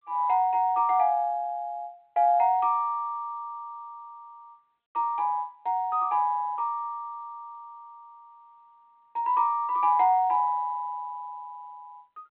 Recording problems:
phone line; 170 Hz to 3.2 kHz, G.726

